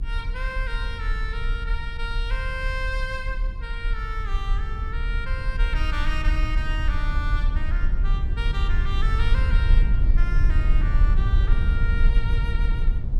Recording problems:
low-frequency rumble; below 54 Hz, SNR -8 dB

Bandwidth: 14.5 kHz